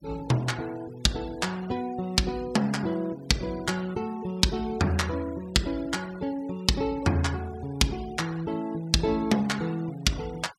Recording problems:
noise reduction artefacts; signal-to-artefact ratio 22 dB

